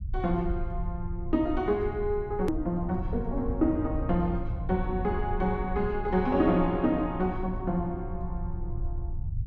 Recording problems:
low-frequency rumble; below 86 Hz, SNR 7 dB
click at an edit; at 2.5 s

